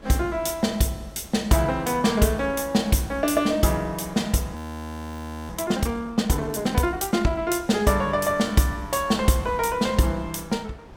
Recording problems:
wind on the microphone; below 650 Hz, SNR 24 dB
frozen audio; at 4.5 s for 1 s

